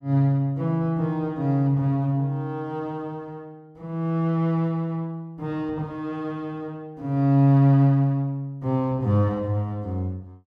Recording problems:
none

